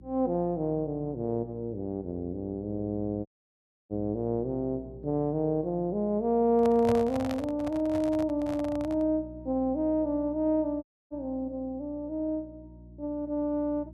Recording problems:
hum; 60 Hz, harmonics up to 360 Hz, SNR 20 dB
dropout; at 3.5 s for 0.5 s and at 11 s
microphone handling noise; from 6.5 to 9 s; peak 0 dB vs average level

